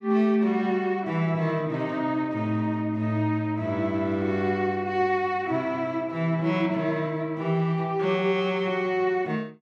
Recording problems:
none

